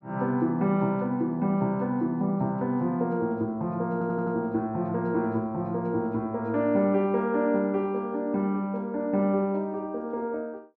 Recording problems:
audio stuttering; at 4 s

